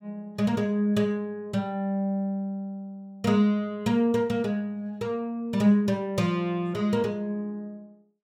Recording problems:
none

